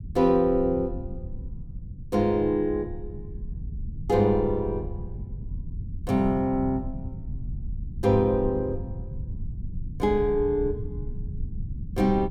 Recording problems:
low-frequency rumble; below 110 Hz, SNR 11 dB

